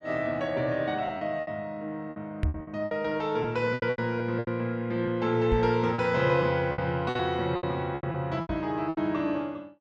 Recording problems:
packet loss; 12% of the sound replaced, filled with repeated pitch periods
microphone thump; at 2.5 s, at 5.5 s and at 8.5 s; peak +4 dB vs average level

